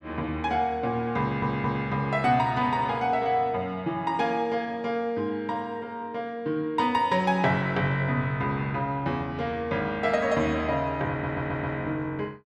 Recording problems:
audio stuttering; at 1 s and at 11 s

